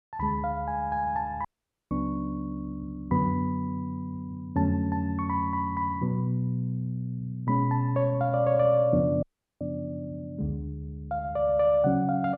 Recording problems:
dropout; at 1.5 s and at 9 s

